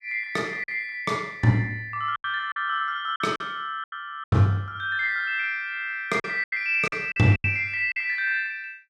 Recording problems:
packet loss; 8% of the sound replaced, filled with silence

